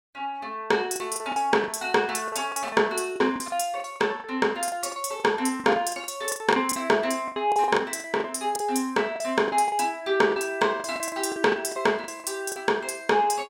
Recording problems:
packet loss; 14% of the sound replaced, filled with the last packet

